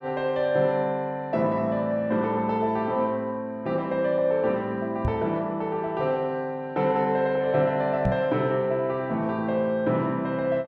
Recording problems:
microphone bump; at 5 s and at 8 s; peak +3 dB vs average level

